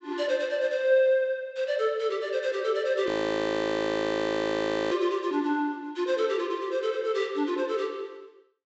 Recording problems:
treble cut off; nothing above 8 kHz
audio freezing; at 3 s for 2 s

